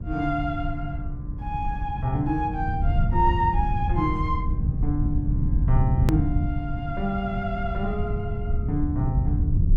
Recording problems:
hum; 60 Hz, harmonics up to 1.2 kHz, SNR 24 dB
rumble; below 120 Hz, SNR -1 dB
edit click; at 6 s

